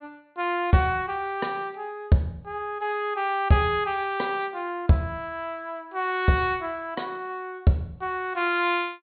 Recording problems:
treble missing; nothing above 4.4 kHz

